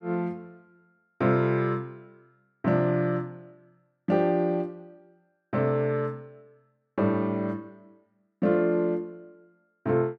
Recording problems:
none

